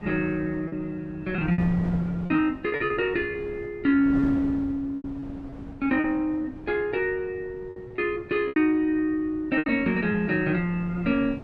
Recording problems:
wind noise; below 350 Hz, SNR 14 dB
packet loss; 7% of the sound replaced, filled with repeated pitch periods

